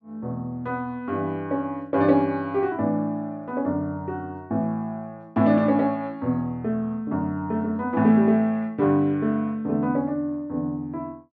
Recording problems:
none

